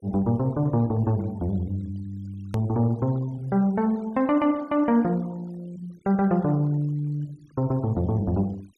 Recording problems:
denoising artefacts; signal-to-artefact ratio 27 dB
hard cut with a click; at 2.5 s

